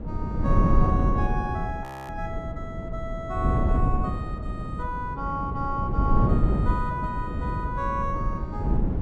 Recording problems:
wind noise; below 170 Hz, SNR -4 dB
frozen audio; at 2 s

